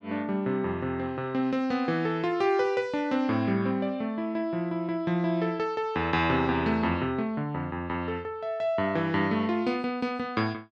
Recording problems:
none

